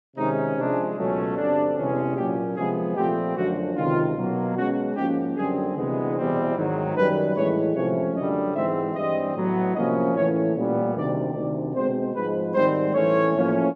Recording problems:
none

